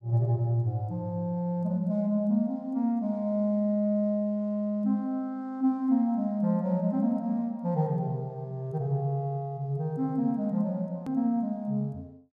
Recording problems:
edit click; at 11 s

